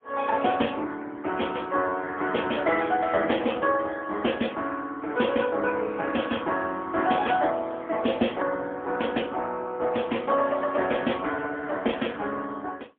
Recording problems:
telephone audio; 240 Hz to 3.4 kHz, AMR-NB, then MP3

